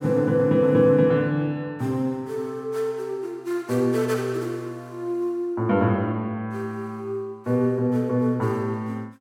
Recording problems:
none

